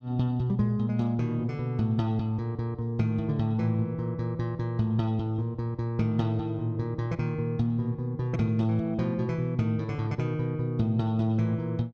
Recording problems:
none

